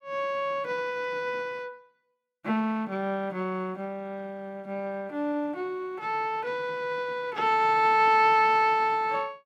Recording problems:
none

